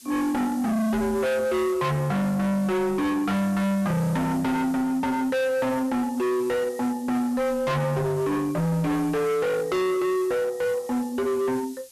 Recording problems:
distortion; hard clipping, signal-to-distortion ratio 6 dB
background hiss; SNR 21 dB

